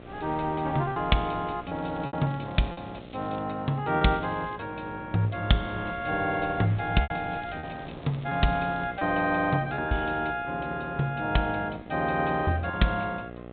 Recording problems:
low-pass filter; nothing above 4 kHz
hum; 60 Hz, harmonics up to 2.1 kHz, SNR 16 dB
wind on the microphone; below 1.2 kHz, SNR 20 dB
packet loss; 4% of the sound replaced, filled with repeated pitch periods
crackling; from 2 to 3.5 s, at 4 s and from 7.5 to 9 s; loose cable, SNR 27 dB

